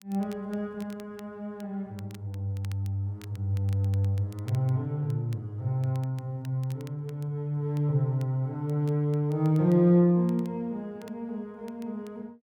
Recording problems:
crackling; vinyl, SNR 28 dB

